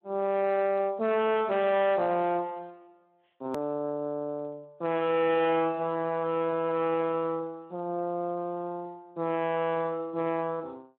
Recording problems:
phone line; 220 Hz to 3.5 kHz, Speex
distorted audio; soft clipping, signal-to-distortion ratio 8 dB
click at an edit; at 3.5 s

